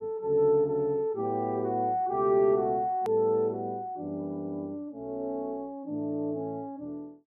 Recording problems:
hard cut with a click; at 3 s

